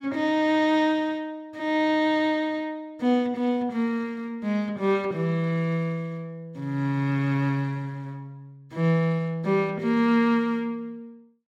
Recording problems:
none

